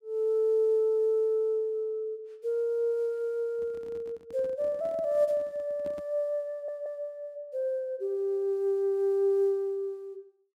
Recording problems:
microphone handling noise; from 3.5 to 6 s; peak -12 dB vs average level
stutter; at 6.5 s

